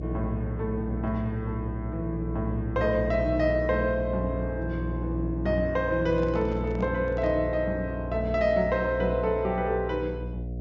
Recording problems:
treble cut off; nothing above 7.3 kHz
hum; 60 Hz, harmonics up to 660 Hz, SNR 6 dB
microphone handling noise; from 6 to 7.5 s; peak -11 dB vs average level

